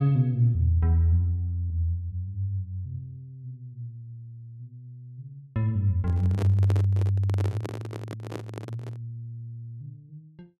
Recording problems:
microphone handling noise; from 6 to 9 s; peak -4 dB vs average level

